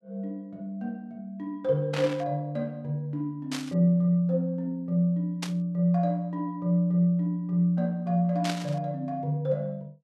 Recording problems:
static burst; 4 times, first at 2 s; peak -2 dB vs average level

